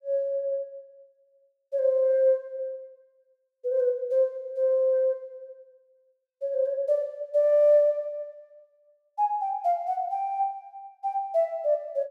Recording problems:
none

